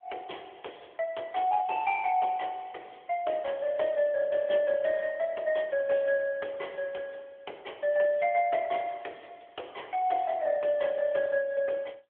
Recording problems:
phone line; 320 Hz to 3.4 kHz, AMR-NB

